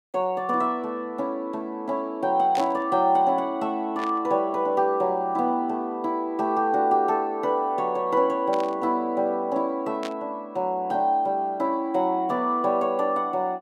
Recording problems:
static burst; 4 times, first at 2.5 s; peak -8 dB vs average level

